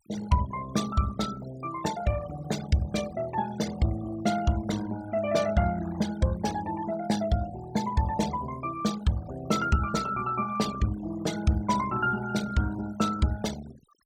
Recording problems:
denoising artefacts; signal-to-artefact ratio 15 dB

